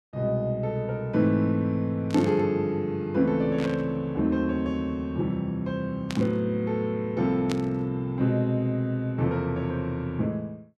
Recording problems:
static burst; 4 times, first at 2 s; peak -4 dB vs average level

